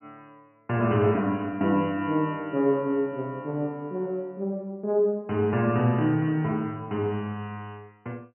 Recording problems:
low-pass filter; nothing above 3 kHz

